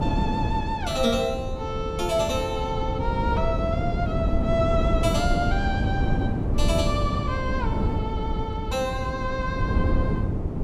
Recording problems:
wind noise; below 220 Hz, SNR -1 dB

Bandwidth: 14.5 kHz